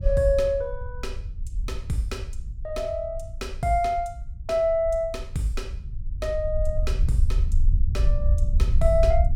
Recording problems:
rumble; below 64 Hz, SNR 2 dB

